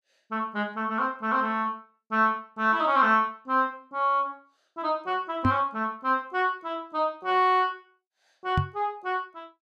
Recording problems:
microphone bump; at 5.5 s and at 8.5 s; peak +4 dB vs average level

